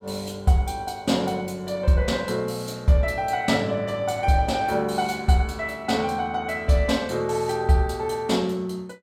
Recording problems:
none

